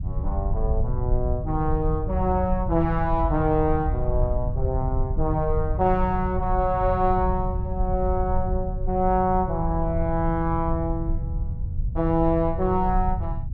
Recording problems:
low-frequency rumble; below 86 Hz, SNR 4 dB

